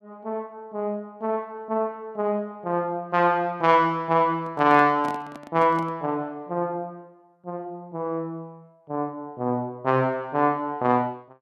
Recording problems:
microphone handling noise; from 4.5 to 6 s; peak -7 dB vs average level

